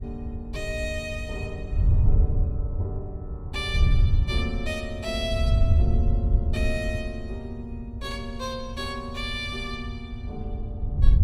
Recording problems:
wind noise; below 90 Hz, SNR -6 dB

